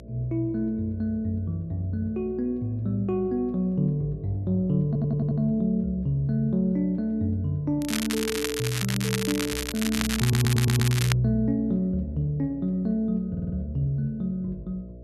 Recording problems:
electrical hum; 60 Hz, harmonics up to 660 Hz, SNR 19 dB
audio stuttering; at 5 s, at 10 s and at 13 s
crackle; from 8 to 11 s; loose cable, SNR 4 dB

